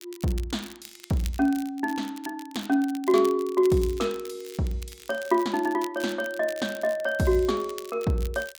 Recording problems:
crackle; vinyl, SNR 18 dB

